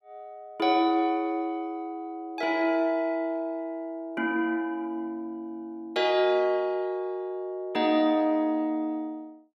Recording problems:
none

